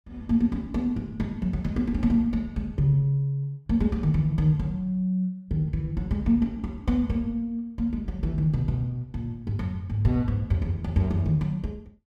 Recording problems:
none

